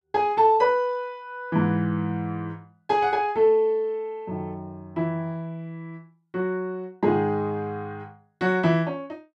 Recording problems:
none

